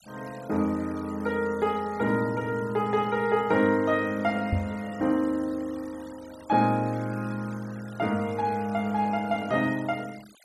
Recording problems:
denoising artefacts; signal-to-artefact ratio 22 dB
microphone thump; at 4.5 s; peak +4 dB vs average level

